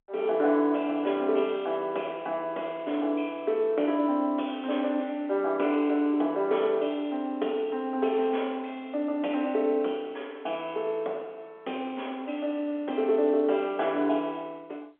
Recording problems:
phone line; 260 Hz to 3.6 kHz, G.711

